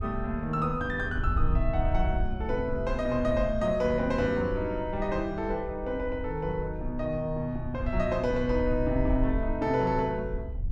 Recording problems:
wind on the microphone; below 66 Hz, SNR 7 dB

